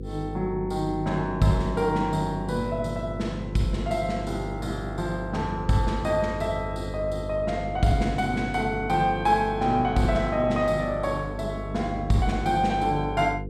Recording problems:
hum; 50 Hz, harmonics up to 500 Hz, SNR 9 dB

